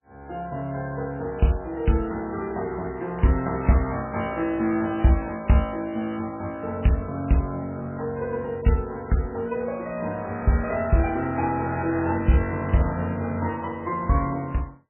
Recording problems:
lossy compression; MP3, log-spectral distance 2 dB, nothing above 2.5 kHz

